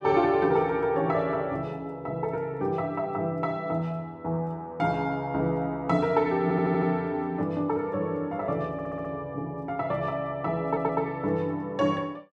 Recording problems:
audio stuttering; at 6.5 s, at 8.5 s and at 11 s

